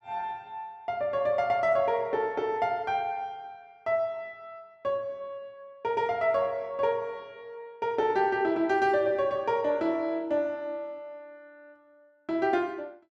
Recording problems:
none

